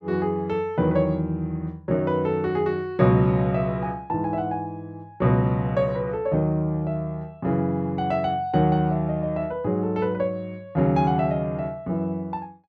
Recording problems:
none

